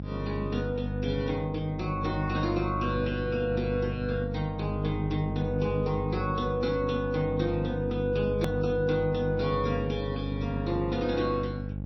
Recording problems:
lossy codec; MP3, log-spectral distance 2 dB, nothing above 20.1 kHz
hum; 50 Hz, harmonics up to 600 Hz, SNR 3 dB
edit click; at 8.5 s

